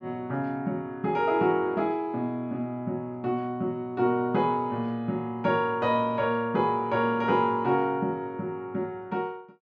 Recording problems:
none

